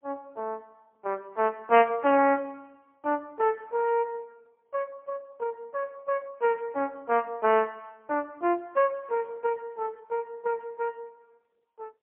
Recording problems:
telephone audio; 240 Hz to 3.1 kHz, AMR-NB, then MP3

